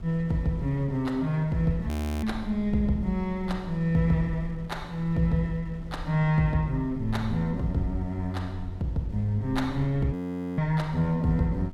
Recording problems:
low-frequency rumble; below 80 Hz, SNR 16 dB
wind noise; below 470 Hz, SNR 24 dB
audio freezing; at 2 s and at 10 s

